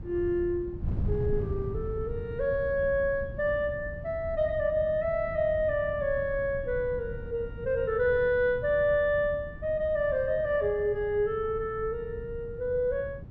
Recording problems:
wind noise; below 140 Hz, SNR 11 dB

